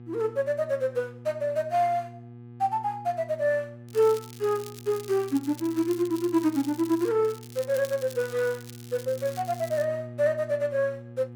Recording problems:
electrical hum; 60 Hz, harmonics up to 840 Hz, SNR 16 dB
crackling; from 4 to 7 s and from 7 to 10 s; loose cable, SNR 18 dB

